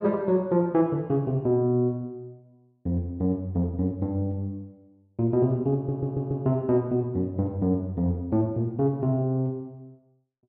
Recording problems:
audio stuttering; at 6 s

